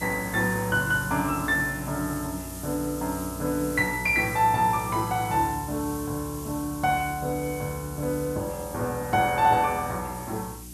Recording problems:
hum; 60 Hz, harmonics up to 360 Hz, SNR 17 dB
hiss; SNR 13 dB

